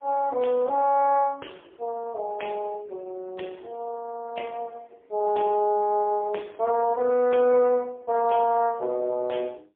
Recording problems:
telephone audio; 280 Hz to 3.3 kHz, AMR-NB, then MP3

